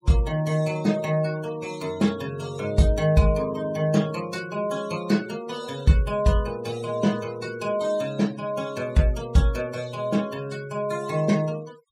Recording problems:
noise reduction artefacts; signal-to-artefact ratio 19 dB

